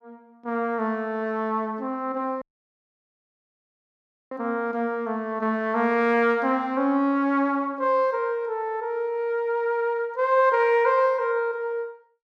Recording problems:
audio cutting out; at 2.5 s for 2 s

